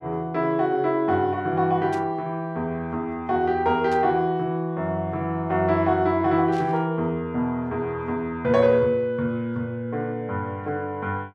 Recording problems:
static burst; at 2 s, at 4 s and at 6.5 s; peak -14 dB vs average level

